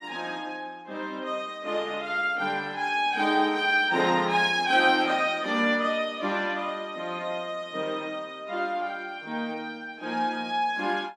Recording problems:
none

